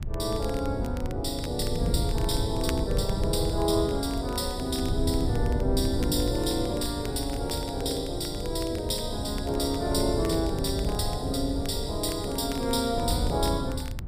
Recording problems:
wind on the microphone; below 110 Hz, SNR 4 dB
crackle; vinyl, SNR 19 dB

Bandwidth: 15 kHz